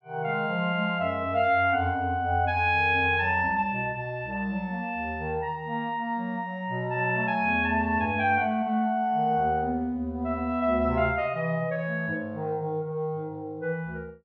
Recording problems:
none

